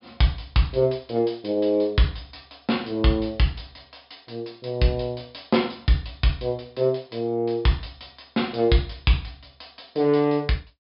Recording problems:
low-pass filter; nothing above 5.2 kHz

